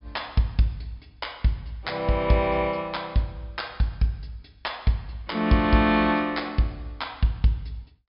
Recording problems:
treble cut off; nothing above 5.5 kHz

